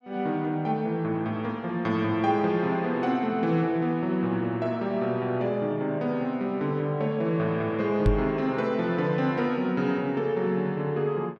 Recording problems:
microphone thump; at 8 s; peak +7 dB vs average level

